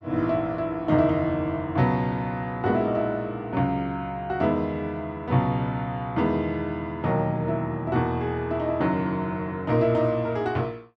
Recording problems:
none

